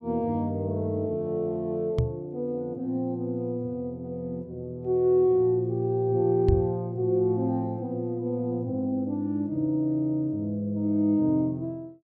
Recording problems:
microphone thump; at 2 s and at 6.5 s; peak +7 dB vs average level

